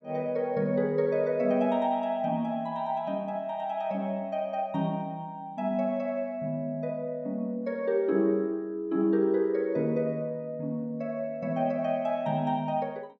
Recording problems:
none

